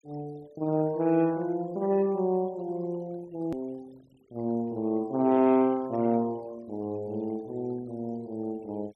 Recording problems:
denoising artefacts; signal-to-artefact ratio 27 dB
click at an edit; at 3.5 s

